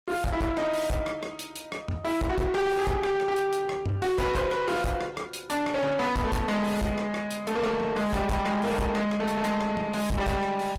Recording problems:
codec artefacts; Opus, log-spectral distance 3 dB, nothing above 18.3 kHz
distorted audio; soft clipping, signal-to-distortion ratio 7 dB

